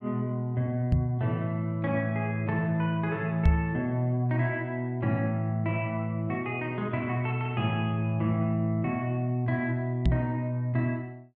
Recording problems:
microphone thump; at 1 s, at 3.5 s and at 10 s; peak +9 dB vs average level

